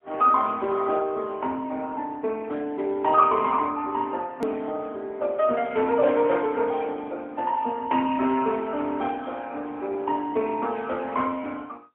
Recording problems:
phone line; 220 Hz to 3.6 kHz, AMR-NB, then MP3
edit click; at 4.5 s

